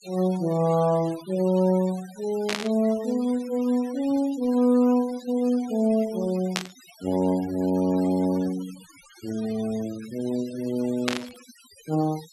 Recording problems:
noise reduction artefacts; signal-to-artefact ratio 20 dB
static burst; at 2.5 s, at 6.5 s and at 11 s; peak +3 dB vs average level

